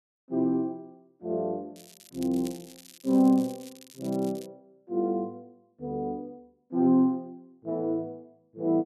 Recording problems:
crackling; from 2 to 4.5 s; loose cable, SNR 21 dB

